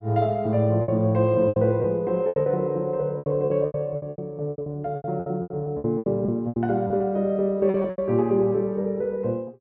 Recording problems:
lost packets; 15% of the sound replaced, filled with repeated pitch periods

